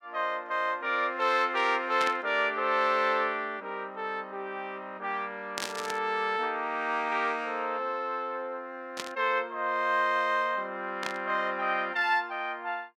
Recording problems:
burst of static; 4 times, first at 2 s; peak 0 dB vs average level

